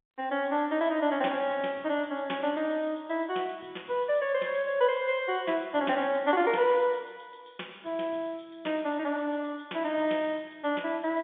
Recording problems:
telephone audio; 240 Hz to 3.6 kHz, G.711

